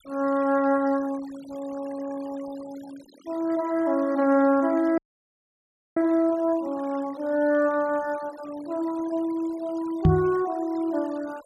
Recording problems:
noise reduction artefacts; signal-to-artefact ratio 22 dB
audio freezing; at 5 s for 1 s
knock on the microphone; at 10 s; peak +10 dB vs average level

